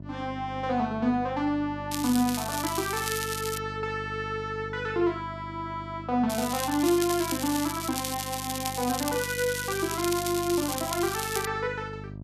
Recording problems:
electrical hum; 50 Hz, harmonics up to 700 Hz, SNR 12 dB
crackling; from 2 to 3.5 s and from 6.5 to 11 s; loose cable, SNR 5 dB

